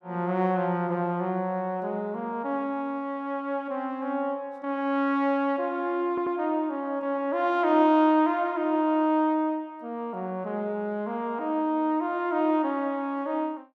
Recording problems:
stutter; at 6 s

